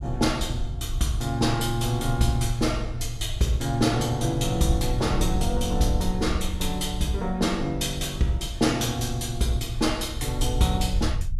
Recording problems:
low-frequency rumble; below 74 Hz, SNR 7 dB

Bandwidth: 14.5 kHz